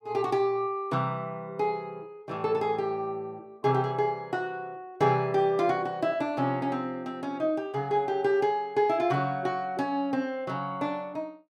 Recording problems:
none

